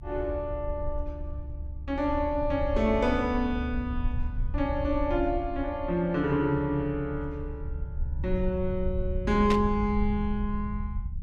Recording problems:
rumble; below 72 Hz, SNR 7 dB
burst of static; at 9.5 s; peak -1 dB vs average level

